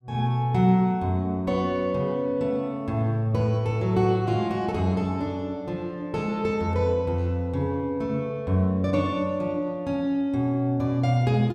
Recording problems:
none

